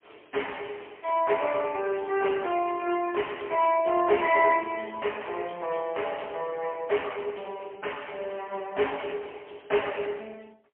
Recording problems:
telephone audio; 320 Hz to 3.1 kHz, AMR-NB, then MP3

